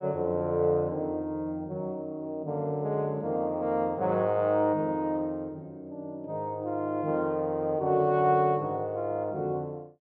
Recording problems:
treble missing; nothing above 5.5 kHz

